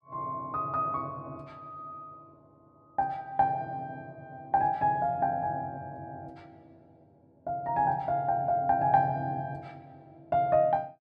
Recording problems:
none

